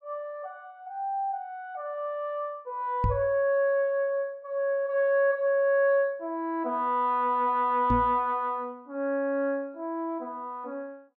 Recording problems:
microphone thump; at 3 s and at 8 s; peak +3 dB vs average level

